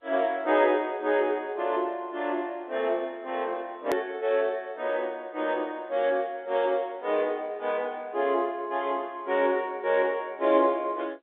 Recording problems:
phone line; 280 Hz to 3.6 kHz, G.711
click at an edit; at 4 s

